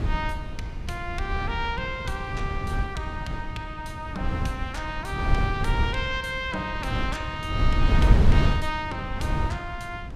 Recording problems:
wind noise; below 120 Hz, SNR -3 dB

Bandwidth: 15.5 kHz